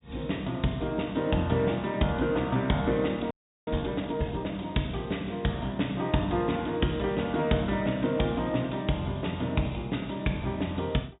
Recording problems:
treble missing; nothing above 4 kHz
audio freezing; at 3.5 s

